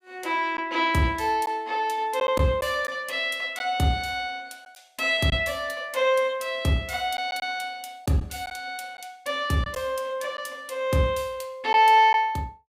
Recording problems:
lost packets; 2% of the sound replaced, filled with silence

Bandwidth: 15.5 kHz